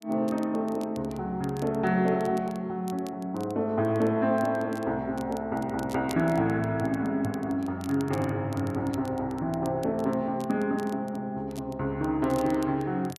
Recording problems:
crackle; vinyl, SNR 23 dB

